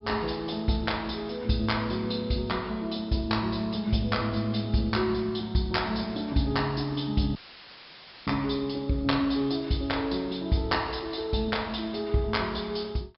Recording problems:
low-pass filter; nothing above 5.3 kHz
dropout; at 7.5 s for 1 s; filled with static

